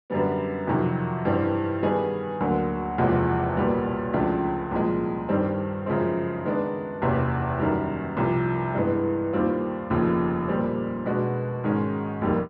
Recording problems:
treble cut off; nothing above 5.2 kHz

